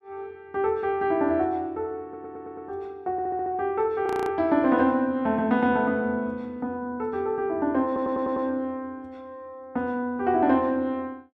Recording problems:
audio stuttering; at 2 s, at 3 s and at 8 s
frozen audio; at 4 s

